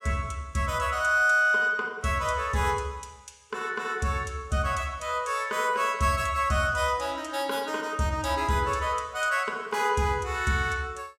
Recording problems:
none

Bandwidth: 16.5 kHz